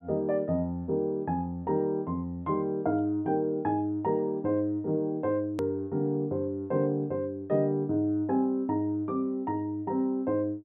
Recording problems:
treble missing; nothing above 4 kHz
hard cut with a click; at 5.5 s

